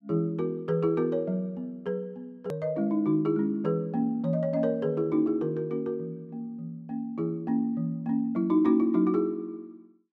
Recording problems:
click at an edit; at 2.5 s

